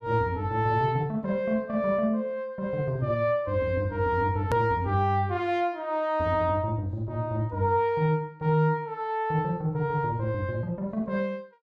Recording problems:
edit click; at 4.5 s

